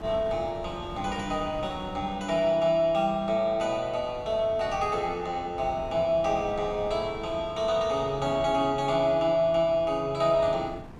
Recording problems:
wind on the microphone; below 350 Hz, SNR 17 dB

